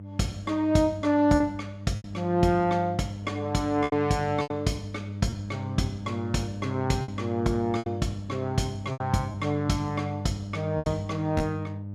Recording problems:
hum; 50 Hz, harmonics up to 600 Hz, SNR 9 dB
packet loss; 6% of the sound replaced, filled with repeated pitch periods

